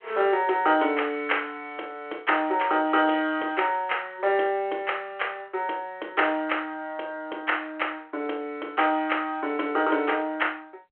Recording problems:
telephone audio; 280 Hz to 3.3 kHz, G.726

